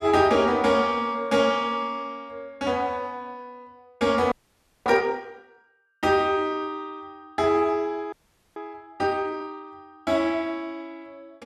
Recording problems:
frozen audio; at 4.5 s for 0.5 s and at 8 s

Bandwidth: 13.5 kHz